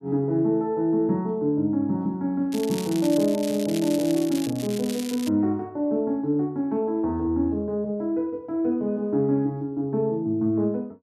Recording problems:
crackle; from 2.5 to 5.5 s; loose cable, SNR 13 dB

